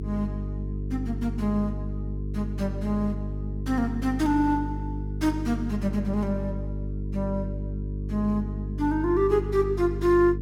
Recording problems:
electrical hum; 50 Hz, harmonics up to 450 Hz, SNR 5 dB

